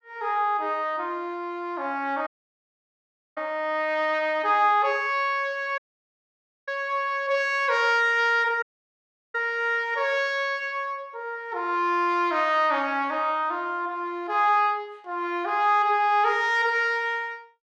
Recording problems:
audio cutting out; at 2.5 s for 1 s, at 6 s for 1 s and at 8.5 s for 0.5 s

